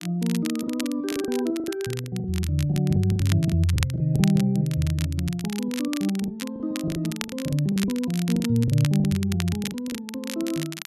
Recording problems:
crackling; vinyl, SNR 12 dB
lost packets; 13% of the sound replaced, filled with the last packet

